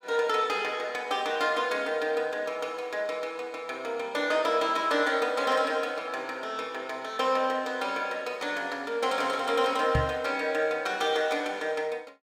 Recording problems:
microphone thump; at 10 s; peak +4 dB vs average level

